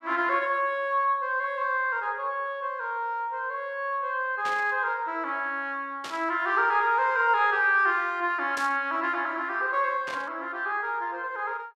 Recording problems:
static burst; 4 times, first at 4.5 s; peak -6 dB vs average level

